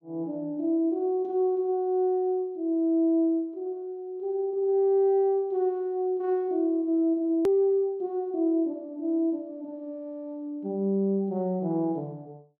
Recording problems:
hard cut with a click; at 7.5 s

